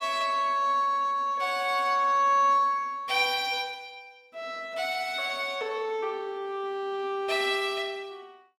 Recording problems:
none

